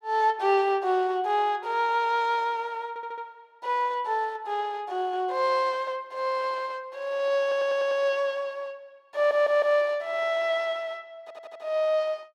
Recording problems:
stutter; 4 times, first at 3 s

